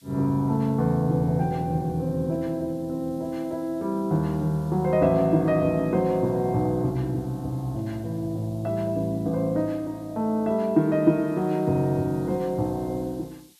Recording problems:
hiss; slope +5 dB per octave, SNR 30 dB

